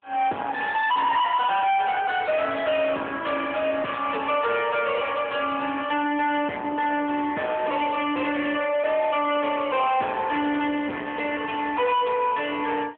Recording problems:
telephone audio; 240 Hz to 3.4 kHz, AMR-NB
distortion; soft clipping, signal-to-distortion ratio 8 dB

